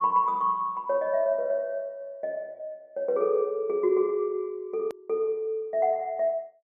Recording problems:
edit click; at 5 s

